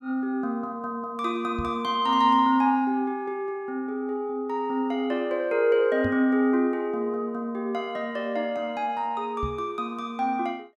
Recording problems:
microphone bump; at 1.5 s, at 6 s and at 9.5 s; peak -2 dB vs average level

